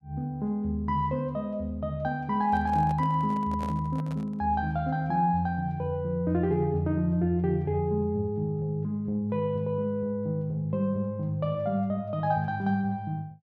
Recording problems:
handling noise; from 2.5 to 4.5 s; peak -7 dB vs average level

